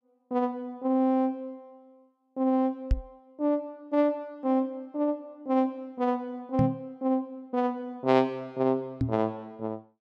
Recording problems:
microphone bump; at 3 s, at 6.5 s and at 9 s; peak +6 dB vs average level

